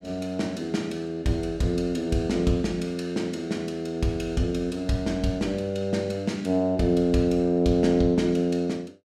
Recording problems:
none

